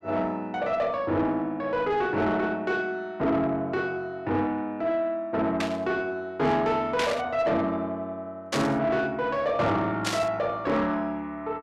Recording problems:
distorted audio; soft clipping, signal-to-distortion ratio 11 dB
static burst; 4 times, first at 5.5 s; peak +2 dB vs average level

